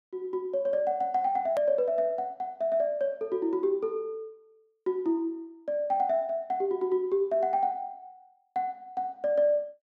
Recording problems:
edit click; at 1.5 s

